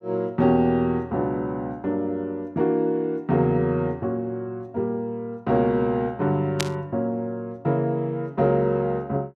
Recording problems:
burst of static; at 6.5 s; peak +3 dB vs average level

